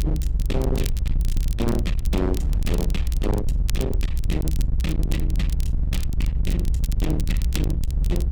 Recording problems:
distortion; hard clipping, signal-to-distortion ratio 7 dB
low-frequency rumble; below 64 Hz, SNR -3 dB
wind on the microphone; below 170 Hz, SNR 13 dB
crackling; vinyl, SNR 12 dB

